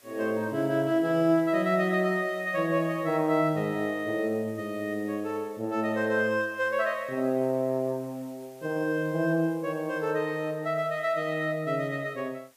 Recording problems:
background hiss; slope -1 dB per octave, SNR 27 dB

